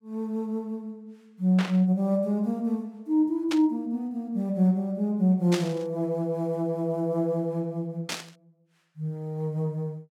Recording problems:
static burst; 4 times, first at 1.5 s; peak 0 dB vs average level

